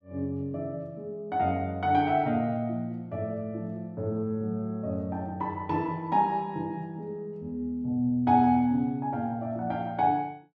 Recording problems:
none

